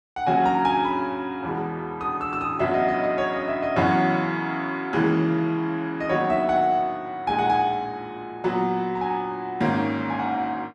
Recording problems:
none

